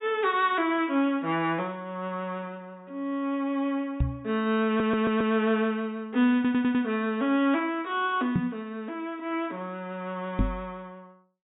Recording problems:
treble cut off; nothing above 4 kHz
knock on the microphone; at 4 s, at 8.5 s and at 10 s; peak +6 dB vs average level
stutter; at 4.5 s and at 6.5 s

